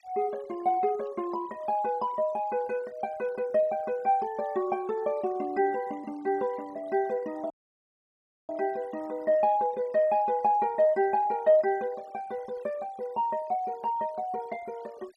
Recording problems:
noise reduction artefacts; signal-to-artefact ratio 26 dB
audio cutting out; at 7.5 s for 1 s

